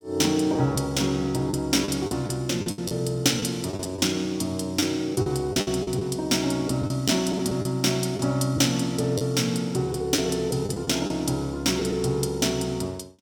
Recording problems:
lost packets; 7% of the sound replaced, filled with the last packet

